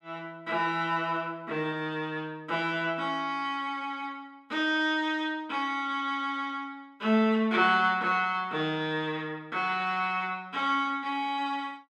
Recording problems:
none

